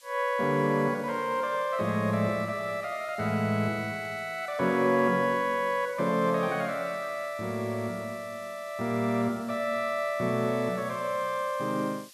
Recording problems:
hiss; slope +5 dB per octave, SNR 23 dB

